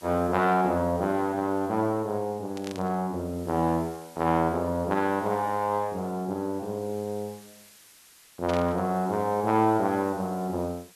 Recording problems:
background hiss; slope +1 dB per octave, SNR 24 dB
static burst; at 2.5 s and at 8.5 s; peak -7 dB vs average level

